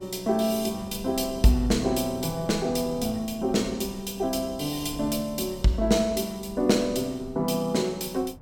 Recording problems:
wind noise; below 230 Hz, SNR 19 dB

